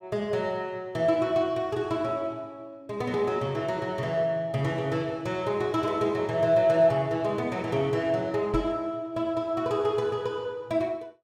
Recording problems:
microphone bump; at 8.5 s; peak 0 dB vs average level

